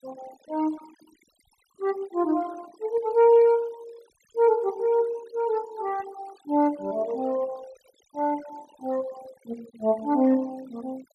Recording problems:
denoising artefacts; signal-to-artefact ratio 23 dB

